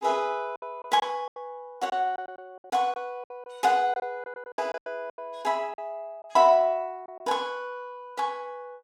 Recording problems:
lost packets; 10% of the sound replaced, filled with silence

